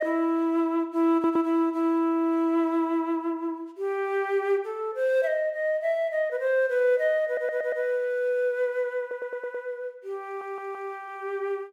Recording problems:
audio stuttering; 4 times, first at 1 s

